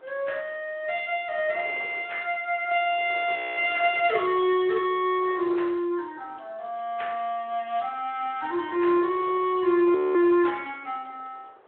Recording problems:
telephone audio; 300 Hz to 3.4 kHz, Speex
wind noise; below 1.2 kHz, SNR 19 dB
audio freezing; at 3.5 s and at 10 s

